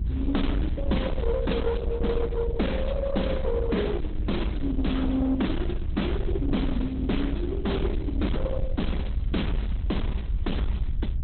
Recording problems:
lossy codec; Opus, log-spectral distance 4 dB, nothing above 4 kHz
distortion; soft clipping, signal-to-distortion ratio 11 dB
low-frequency rumble; below 74 Hz, SNR 2 dB

